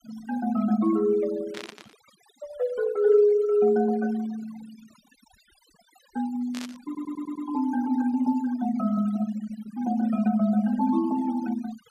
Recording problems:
denoising artefacts; signal-to-artefact ratio 19 dB
static burst; at 1.5 s and at 6.5 s; peak -9 dB vs average level
stutter; at 7 s

